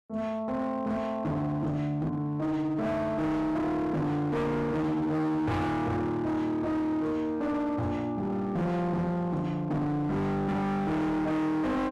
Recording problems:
distorted audio; hard clipping, signal-to-distortion ratio 7 dB

